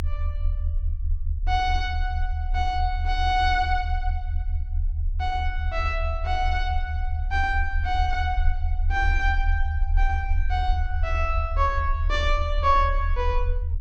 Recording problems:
low-frequency rumble; below 76 Hz, strongest tone 32 Hz, SNR 1 dB

